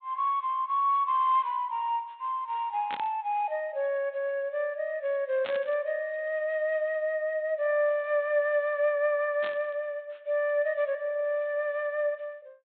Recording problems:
low-pass filter; nothing above 4 kHz
static burst; at 3 s, at 5.5 s and at 9.5 s; peak -5 dB vs average level

